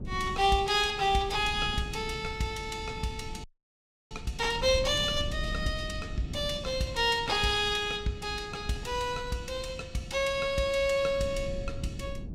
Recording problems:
wind noise; below 160 Hz, SNR 12 dB
audio freezing; at 3.5 s for 0.5 s

